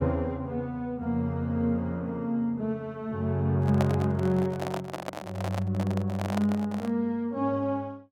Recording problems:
microphone handling noise; from 3.5 to 7 s; peak +1 dB vs average level

